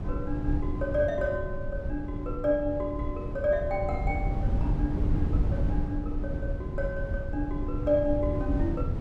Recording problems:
low-frequency rumble; below 120 Hz, SNR 1 dB

